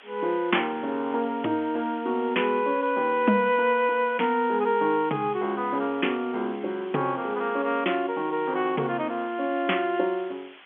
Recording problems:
telephone audio; 220 Hz to 3.4 kHz, G.711
hiss; SNR 22 dB

